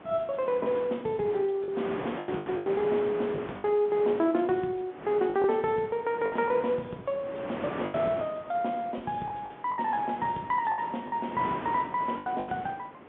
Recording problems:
telephone audio; 170 Hz to 3.6 kHz, G.711
wind noise; below 1.2 kHz, SNR 11 dB
lost packets; 8% of the sound replaced, filled with the last packet

